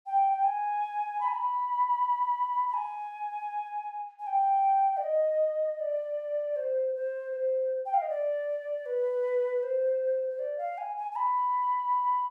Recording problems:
none

